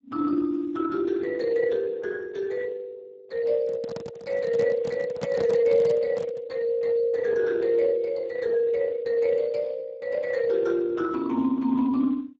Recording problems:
lossy codec; Speex, log-spectral distance 3 dB, nothing above 7.3 kHz
handling noise; from 3.5 to 6.5 s; peak -4 dB vs average level

